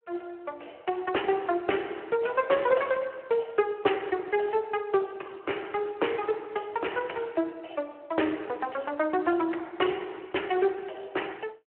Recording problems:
telephone audio; 280 Hz to 3.1 kHz, Speex

